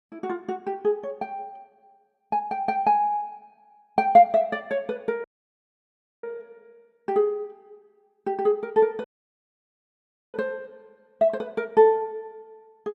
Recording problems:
dropout; at 5 s for 1 s and at 9 s for 1.5 s

